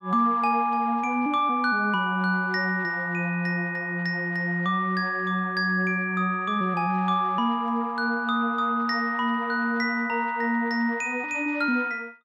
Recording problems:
none

